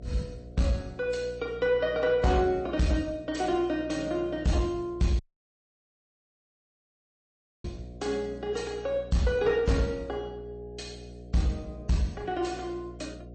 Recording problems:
codec artefacts; MP3, log-spectral distance 2 dB, nothing above 8.2 kHz
distorted audio; soft clipping, signal-to-distortion ratio 11 dB
hum; 60 Hz, harmonics up to 720 Hz, SNR 17 dB
audio cutting out; at 5 s for 2.5 s

